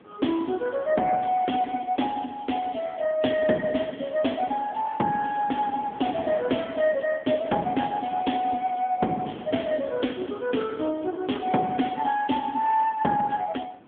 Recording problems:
telephone audio; 170 Hz to 3.5 kHz, AMR-NB
wind noise; below 750 Hz, SNR 20 dB

